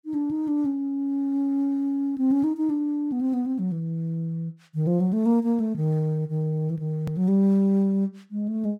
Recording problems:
edit click; at 7 s

